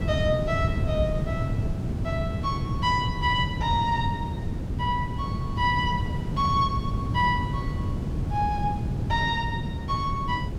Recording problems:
wind noise; below 190 Hz, SNR 1 dB

